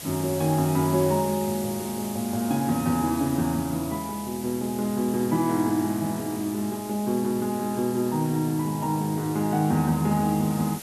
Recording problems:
background hiss; SNR 13 dB

